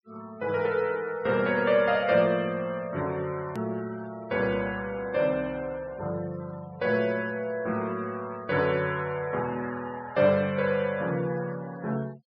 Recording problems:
low-pass filter; nothing above 5.5 kHz
denoising artefacts; signal-to-artefact ratio 22 dB
click at an edit; at 3.5 s

